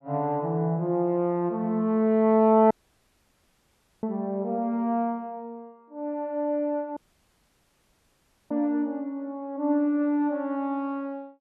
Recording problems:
audio cutting out; at 2.5 s for 1.5 s and at 7 s for 1.5 s

